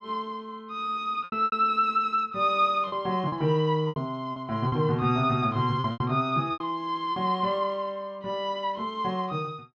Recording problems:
lost packets; 7% of the sound replaced, filled with repeated pitch periods

